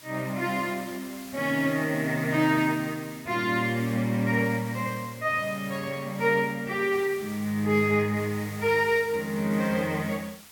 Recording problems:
hiss; slope +1 dB per octave, SNR 18 dB

